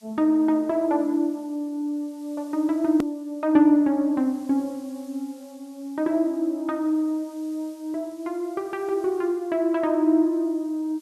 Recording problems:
hiss; slope +3 dB per octave, SNR 30 dB
hard cut with a click; at 3 s

